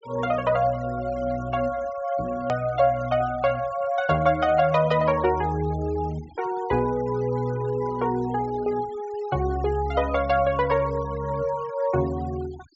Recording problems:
treble cut off; nothing above 7.6 kHz
noise reduction artefacts; signal-to-artefact ratio 21 dB
click at an edit; at 2.5 s

